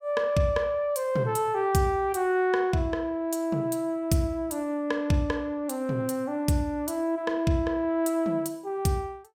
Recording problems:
none

